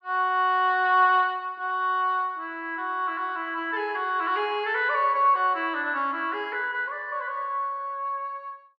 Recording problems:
none

